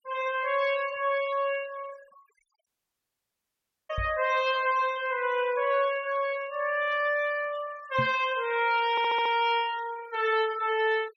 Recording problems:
denoising artefacts; signal-to-artefact ratio 18 dB
dropout; at 2.5 s for 1 s
microphone thump; at 4 s and at 8 s; peak -3 dB vs average level
audio stuttering; at 9 s

